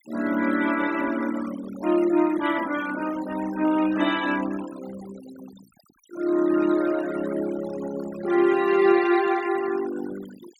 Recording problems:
noise reduction artefacts; signal-to-artefact ratio 16 dB

